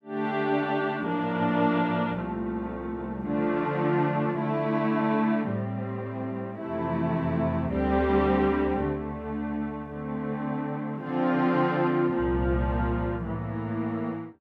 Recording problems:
none

